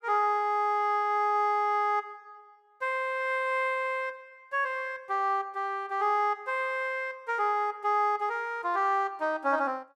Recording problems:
none

